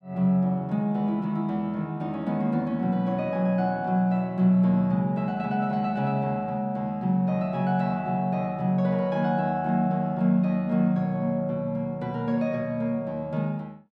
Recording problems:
none

